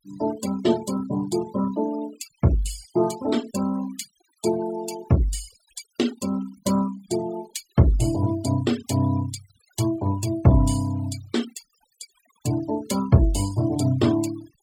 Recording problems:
noise reduction artefacts; signal-to-artefact ratio 16 dB

